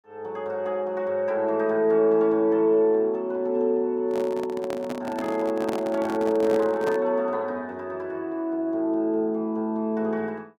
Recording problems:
microphone handling noise; from 4 to 7 s; peak -4 dB vs average level

